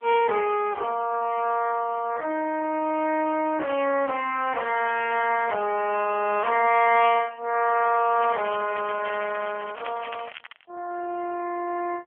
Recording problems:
telephone audio; 280 Hz to 3.1 kHz, AMR-NB
crackle; from 8 to 11 s; loose cable, SNR 17 dB

